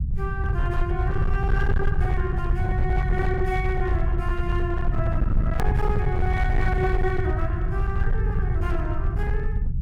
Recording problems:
distorted audio; hard clipping, signal-to-distortion ratio 11 dB
low-frequency rumble; below 100 Hz, SNR -4 dB
edit click; at 5.5 s

